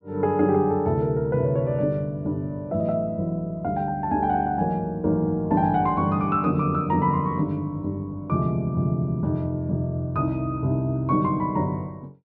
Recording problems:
none

